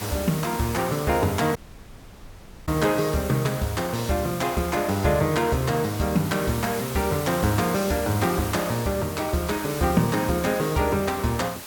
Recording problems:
hiss; slope -1 dB per octave, SNR 11 dB
dropout; at 1.5 s for 1 s

